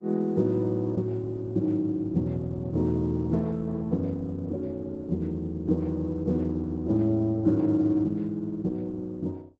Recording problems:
lossy compression; Opus, log-spectral distance 2 dB, nothing above 7.6 kHz

